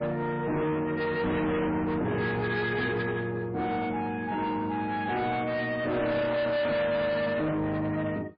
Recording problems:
lossy compression; MP3, log-spectral distance 2 dB, nothing above 4.5 kHz
distorted audio; soft clipping, signal-to-distortion ratio 7 dB

